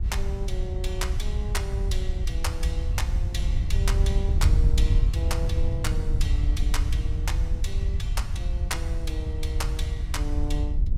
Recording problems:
wind noise; below 76 Hz, SNR -8 dB

